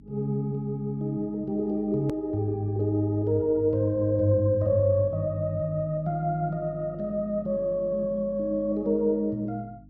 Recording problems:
electrical hum; 50 Hz, harmonics up to 300 Hz, SNR 21 dB
hard cut with a click; at 2 s

